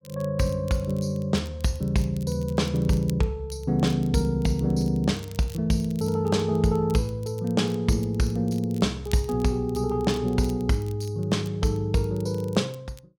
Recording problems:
crackle; vinyl, SNR 25 dB

